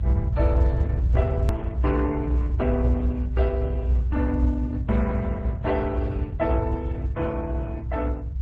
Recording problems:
lossy codec; MP3, then Opus, log-spectral distance 2 dB, nothing above 13.1 kHz
low-frequency rumble; below 82 Hz, strongest tone 60 Hz, SNR -4 dB
edit click; at 1.5 s

